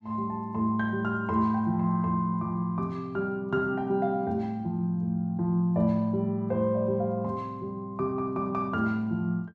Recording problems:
none

